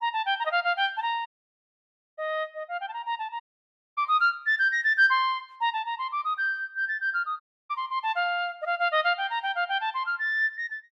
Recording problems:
dropout; at 1.5 s for 1 s, at 3.5 s for 0.5 s and at 7.5 s

